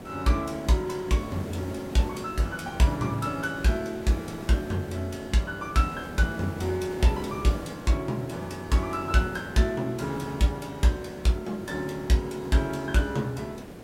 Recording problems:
hiss; SNR 12 dB

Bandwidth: 16 kHz